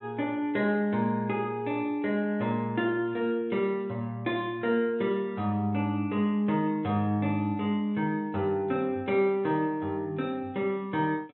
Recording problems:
low-pass filter; nothing above 4 kHz

